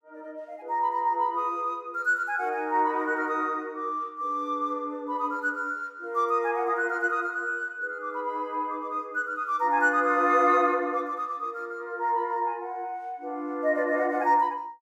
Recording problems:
none

